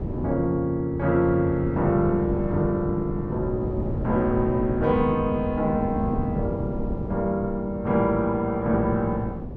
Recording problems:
wind on the microphone; below 280 Hz, SNR 8 dB

